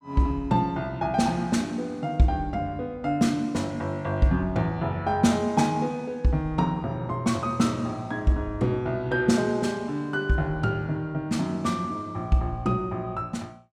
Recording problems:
none

